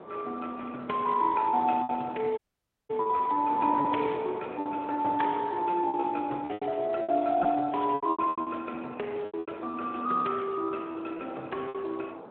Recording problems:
phone line; 260 Hz to 3.2 kHz, Speex
wind noise; below 910 Hz, SNR 14 dB
lost packets; 10% of the sound replaced, filled with repeated pitch periods
audio cutting out; at 2.5 s for 0.5 s

